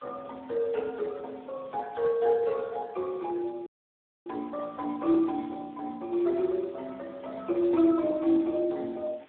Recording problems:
phone line; 280 Hz to 2 kHz, Speex
background hiss; SNR 30 dB
dropout; at 3.5 s for 0.5 s

